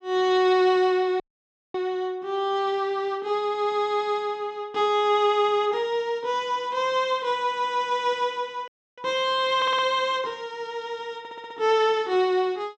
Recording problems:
audio cutting out; at 1 s for 0.5 s and at 8.5 s
stutter; at 9.5 s and at 11 s

